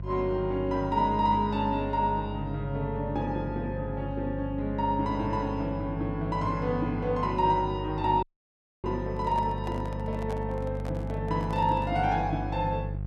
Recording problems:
electrical hum; 50 Hz, harmonics up to 500 Hz, SNR 7 dB
audio cutting out; at 8 s for 0.5 s
microphone handling noise; from 9 to 12 s; peak -8 dB vs average level

